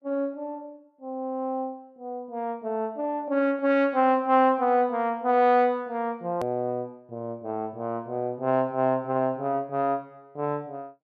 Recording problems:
edit click; at 6.5 s

